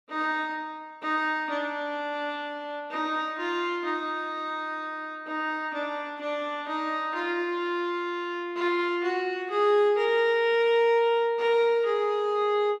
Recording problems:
none

